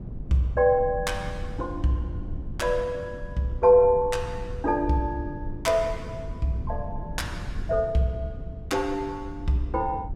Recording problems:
rumble; below 120 Hz, SNR 11 dB

